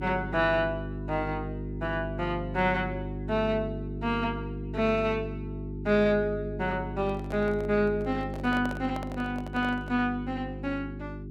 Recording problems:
hum; 50 Hz, harmonics up to 400 Hz, SNR 7 dB
handling noise; from 7 to 10 s; peak -6 dB vs average level

